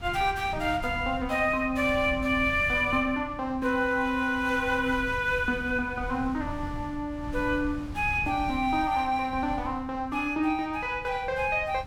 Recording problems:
wind on the microphone; below 130 Hz, SNR 14 dB

